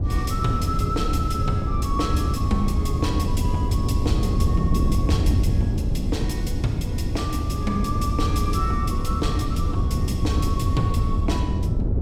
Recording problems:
wind noise; below 150 Hz, SNR -5 dB

